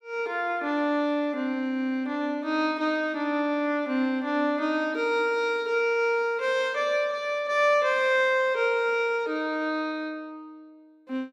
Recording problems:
none

